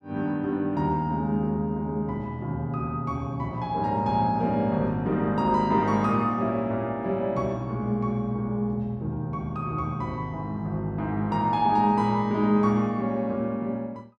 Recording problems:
none

